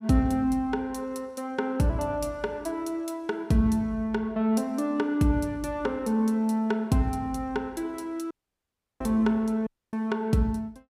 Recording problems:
dropout; at 8.5 s for 0.5 s and at 9.5 s

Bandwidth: 15.5 kHz